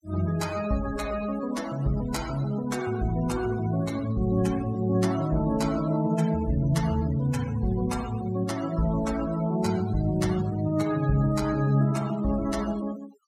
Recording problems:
denoising artefacts; signal-to-artefact ratio 16 dB

